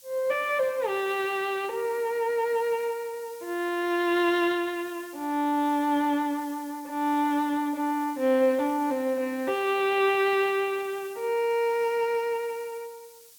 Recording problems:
lossy codec; Speex, log-spectral distance 2 dB
hiss; SNR 22 dB

